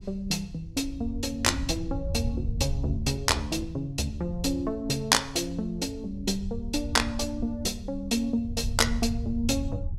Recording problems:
rumble; below 96 Hz, SNR 8 dB

